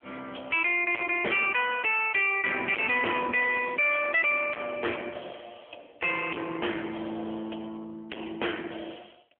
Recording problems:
phone line; 280 Hz to 3.1 kHz, AMR-NB
distorted audio; hard clipping, signal-to-distortion ratio 5 dB

